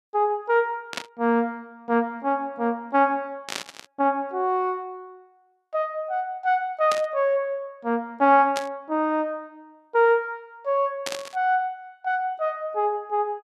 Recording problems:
burst of static; 5 times, first at 1 s; peak -1 dB vs average level

